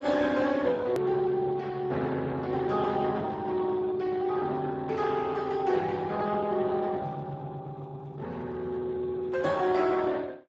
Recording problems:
lossy compression; Speex, log-spectral distance 3 dB, nothing above 13.1 kHz
click at an edit; at 1 s

